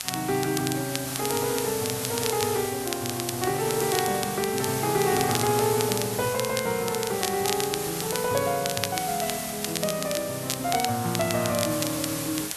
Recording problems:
hiss; slope +1 dB per octave, SNR 5 dB
crackle; vinyl, SNR 7 dB
microphone handling noise; from 2 to 5.5 s; peak -10 dB vs average level

